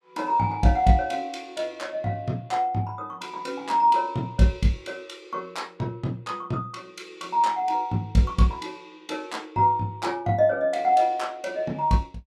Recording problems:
none

